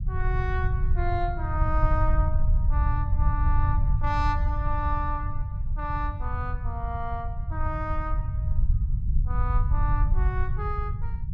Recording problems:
low-frequency rumble; below 84 Hz, SNR -5 dB

